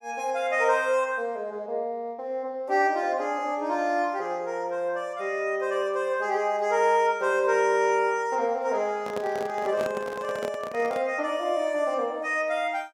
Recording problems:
handling noise; from 9 to 11 s; peak -4 dB vs average level

